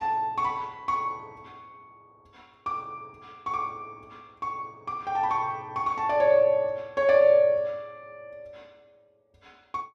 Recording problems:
none

